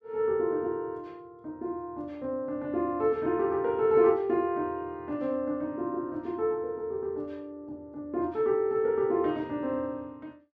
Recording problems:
none

